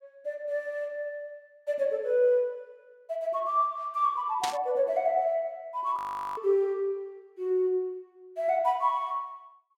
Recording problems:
burst of static; at 4.5 s; peak +1 dB vs average level
frozen audio; at 6 s

